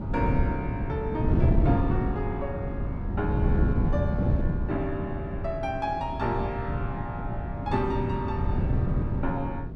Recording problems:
wind on the microphone; below 190 Hz, SNR -3 dB

